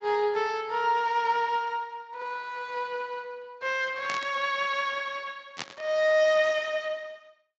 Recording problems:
lossy codec; Speex, log-spectral distance 3 dB
burst of static; at 4 s and at 5.5 s; peak -2 dB vs average level

